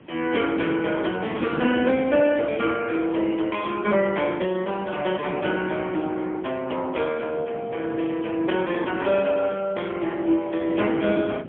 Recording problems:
phone line; 220 Hz to 3.3 kHz, AMR-NB, then MP3
background hiss; SNR 29 dB
wind noise; below 380 Hz, SNR 14 dB

